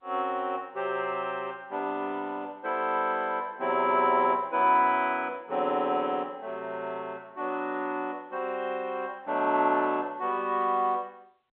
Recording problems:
telephone audio; 300 Hz to 3.4 kHz, G.711

